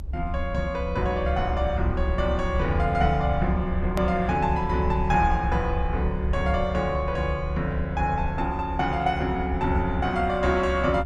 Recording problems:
low-frequency rumble; below 70 Hz, strongest tone 68 Hz, SNR 5 dB
hard cut with a click; at 4 s

